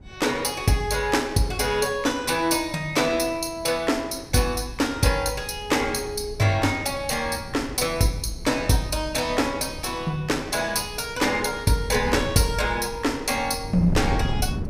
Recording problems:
wind on the microphone; below 160 Hz, SNR 13 dB

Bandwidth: 15.5 kHz